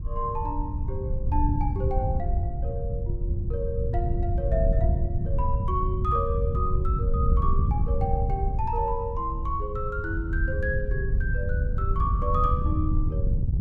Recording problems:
wind noise; below 96 Hz, SNR -3 dB

